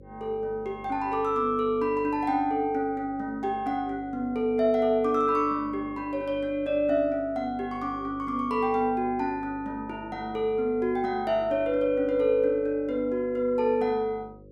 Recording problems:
hum; 50 Hz, harmonics up to 550 Hz, SNR 20 dB

